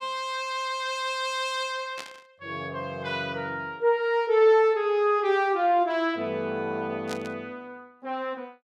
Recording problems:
burst of static; at 2 s and at 7 s; peak -7 dB vs average level

